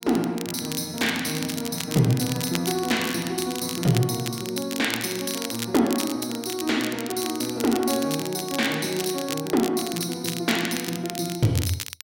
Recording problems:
crackle; vinyl, SNR 8 dB

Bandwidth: 16.5 kHz